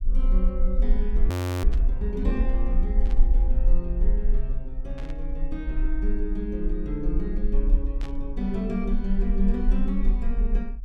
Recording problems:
low-frequency rumble; below 40 Hz, strongest tone 22 Hz, SNR -5 dB
audio freezing; at 1.5 s
burst of static; 4 times, first at 1.5 s; peak -8 dB vs average level

